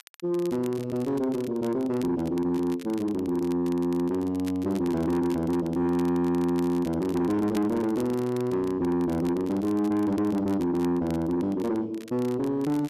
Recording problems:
distorted audio; soft clipping, signal-to-distortion ratio 11 dB
crackling; vinyl, SNR 23 dB

